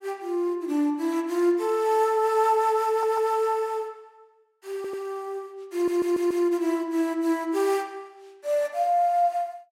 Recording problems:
audio stuttering; at 3 s, at 5 s and at 5.5 s

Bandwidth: 16 kHz